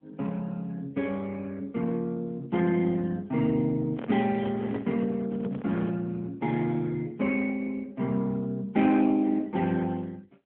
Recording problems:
telephone audio; 150 Hz to 3.5 kHz, AMR-NB
handling noise; from 4 to 6 s; peak -2 dB vs average level

